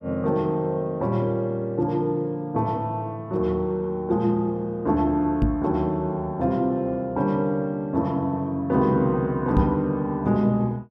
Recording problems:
knock on the microphone; at 5.5 s and at 9.5 s; peak +5 dB vs average level

